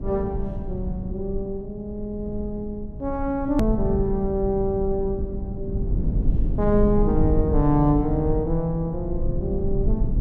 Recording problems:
low-frequency rumble; below 120 Hz, SNR 3 dB
hard cut with a click; at 3.5 s

